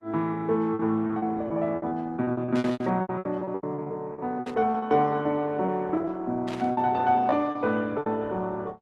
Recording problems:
lossy codec; Opus, log-spectral distance 2 dB
packet loss; 16% of the sound replaced, filled with repeated pitch periods
burst of static; at 2.5 s, at 4.5 s and at 6.5 s; peak -7 dB vs average level

